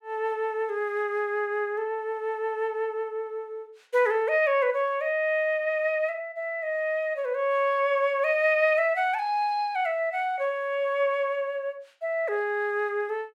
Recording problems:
none

